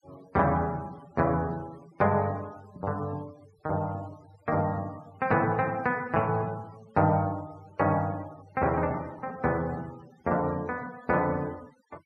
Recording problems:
noise reduction artefacts; signal-to-artefact ratio 24 dB

